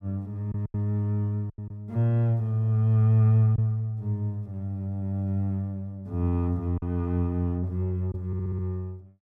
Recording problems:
packet loss; 3% of the sound replaced, filled with silence
audio stuttering; at 8.5 s

